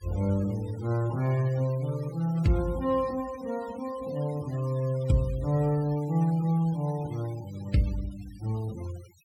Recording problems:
noise reduction artefacts; signal-to-artefact ratio 21 dB

